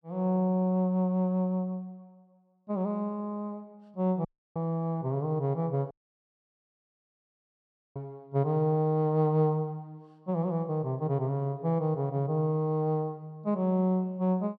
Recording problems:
dropout; at 4.5 s and at 6 s for 2 s

